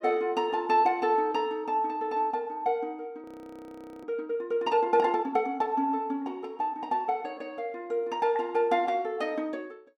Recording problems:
audio freezing; at 3 s for 1 s

